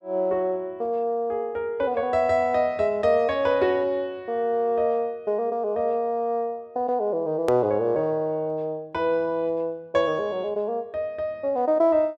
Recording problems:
hard cut with a click; at 7.5 s

